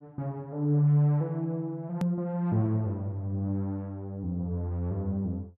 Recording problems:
edit click; at 2 s

